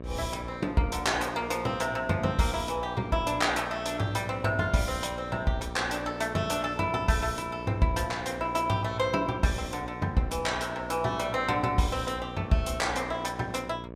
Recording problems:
hum; 60 Hz, harmonics up to 1.8 kHz, SNR 12 dB

